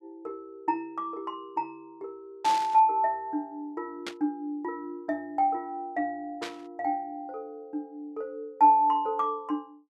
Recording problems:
static burst; at 2.5 s, at 4 s and at 6.5 s; peak -3 dB vs average level

